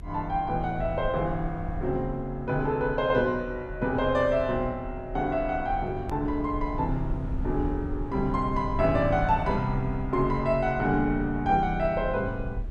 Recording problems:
rumble; below 78 Hz, SNR 10 dB
edit click; at 6 s

